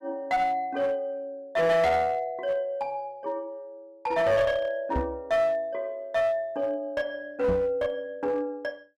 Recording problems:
distortion; hard clipping, uneven, signal-to-distortion ratio 11 dB
microphone thump; at 5 s and at 7.5 s; peak +2 dB vs average level

